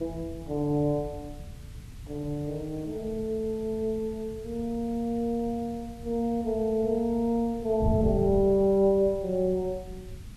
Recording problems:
hiss; slope 0 dB per octave, SNR 27 dB
wind on the microphone; below 150 Hz, SNR 12 dB

